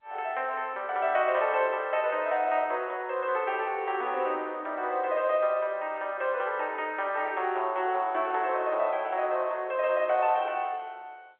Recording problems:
telephone audio; 320 Hz to 3.6 kHz, G.711

